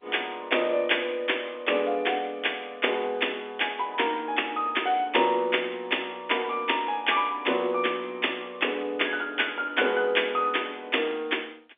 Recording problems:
phone line; 260 Hz to 3.6 kHz, G.711

